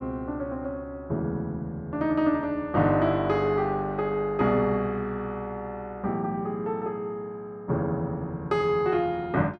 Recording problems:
none

